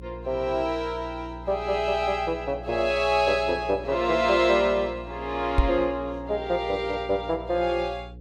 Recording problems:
hum; 60 Hz, harmonics up to 540 Hz, SNR 16 dB
microphone bump; at 5.5 s; peak +7 dB vs average level

